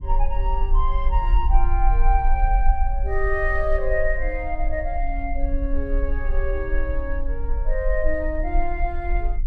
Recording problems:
rumble; below 42 Hz, SNR -2 dB

